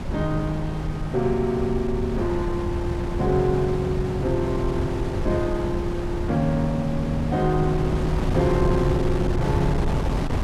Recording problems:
wind on the microphone; below 260 Hz, SNR 3 dB

